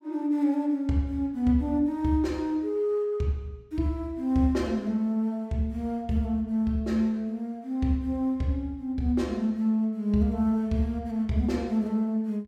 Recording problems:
none

